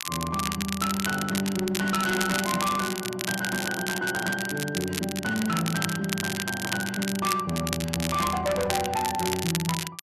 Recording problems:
distortion; hard clipping, signal-to-distortion ratio 12 dB
crackle; vinyl, SNR 4 dB

